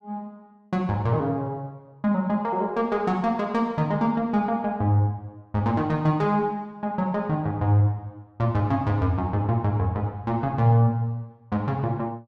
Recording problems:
none

